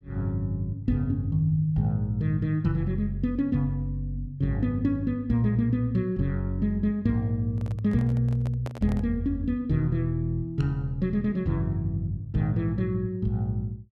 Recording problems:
handling noise; from 7.5 to 9 s; peak -7 dB vs average level

